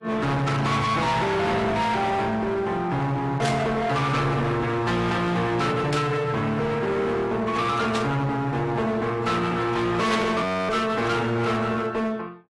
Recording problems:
codec artefacts; AAC, log-spectral distance 3 dB, nothing above 13.3 kHz
distorted audio; hard clipping, uneven, signal-to-distortion ratio 7 dB
burst of static; 4 times, first at 3.5 s; peak 0 dB vs average level
audio freezing; at 10 s

